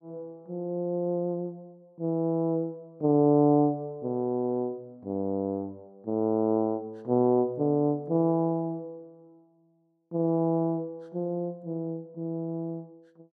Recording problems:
none

